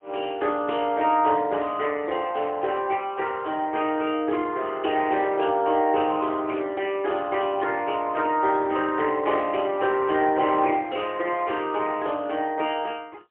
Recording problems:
phone line; 320 Hz to 3.4 kHz, AMR-NB, then MP3

